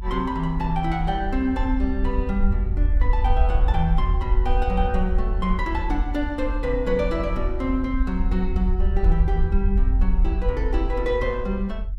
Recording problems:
low-frequency rumble; below 58 Hz, SNR -1 dB

